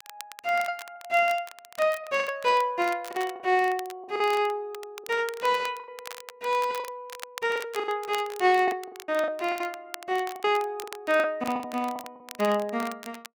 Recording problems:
crackling; vinyl, SNR 17 dB
lost packets; 12% of the sound replaced, filled with the last packet

